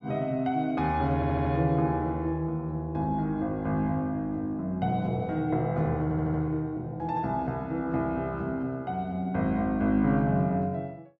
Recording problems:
audio stuttering; at 1 s and at 6 s

